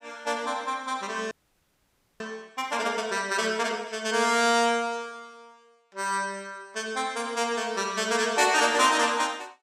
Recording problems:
frozen audio; at 1.5 s for 1 s

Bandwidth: 15.5 kHz